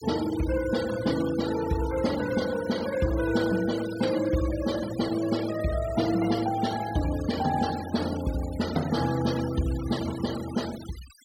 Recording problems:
noise reduction artefacts; signal-to-artefact ratio 13 dB

